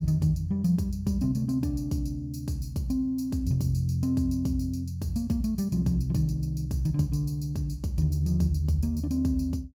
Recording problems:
none

